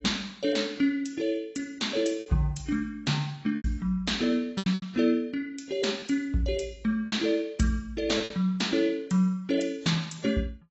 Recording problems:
lossy compression; AAC, log-spectral distance 3 dB, nothing above 7.8 kHz
lost packets; 5% of the sound replaced, filled with repeated pitch periods

